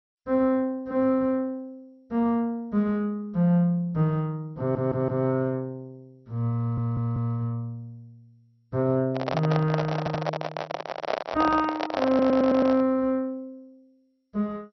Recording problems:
lossy compression; MP2, log-spectral distance 2 dB, nothing above 5.5 kHz
stutter; 4 times, first at 4.5 s
handling noise; from 9 to 13 s; peak +2 dB vs average level

